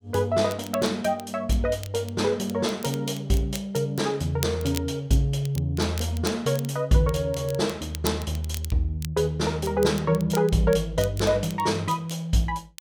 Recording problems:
crackle; vinyl, SNR 16 dB

